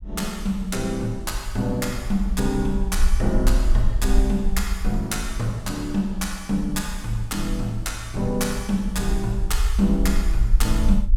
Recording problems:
rumble; below 48 Hz, SNR 3 dB

